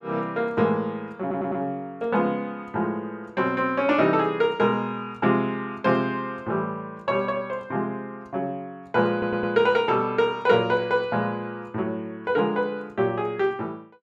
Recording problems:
audio stuttering; at 1 s and at 9 s

